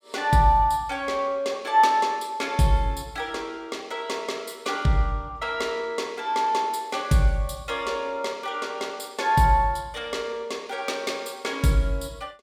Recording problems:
none

